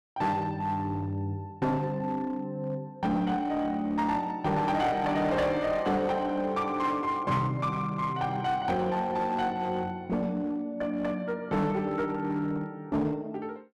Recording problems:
distorted audio; hard clipping, uneven, signal-to-distortion ratio 10 dB

